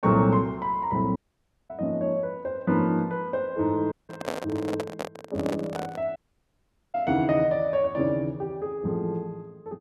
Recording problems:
audio cutting out; at 1 s for 0.5 s, at 4 s and at 6 s for 1 s
microphone handling noise; from 4 to 6 s; peak 0 dB vs average level

